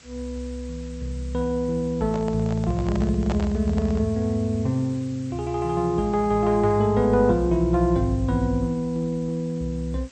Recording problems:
lossy compression; MP2, log-spectral distance 3 dB, nothing above 13.1 kHz
hiss; slope 0 dB per octave, SNR 25 dB
handling noise; from 2 to 4 s; peak -3 dB vs average level

